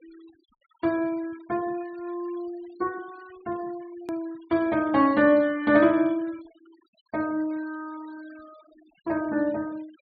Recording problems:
treble missing; nothing above 4.6 kHz
denoising artefacts; signal-to-artefact ratio 26 dB
click at an edit; at 4 s

